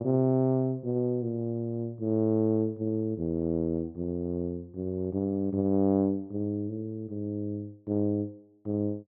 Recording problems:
none

